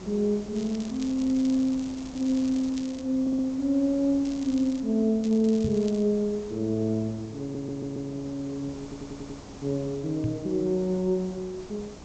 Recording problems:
low-pass filter; nothing above 8 kHz
hiss; SNR 18 dB
crackling; from 0.5 to 3 s, at 4.5 s and at 5 s; loose cable, SNR 20 dB
stutter; at 3 s, at 7.5 s and at 9 s
knock on the microphone; at 5.5 s and at 10 s; peak +1 dB vs average level

